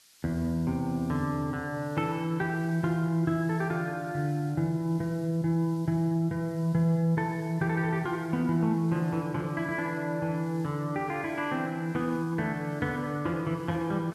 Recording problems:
hiss; SNR 26 dB

